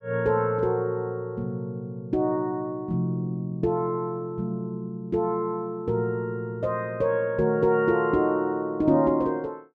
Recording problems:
none

